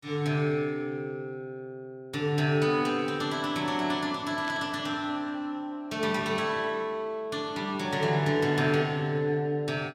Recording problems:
static burst; at 4.5 s; peak -8 dB vs average level

